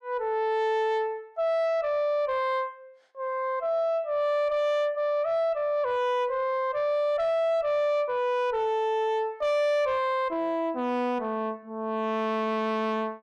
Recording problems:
distortion; soft clipping, signal-to-distortion ratio 11 dB

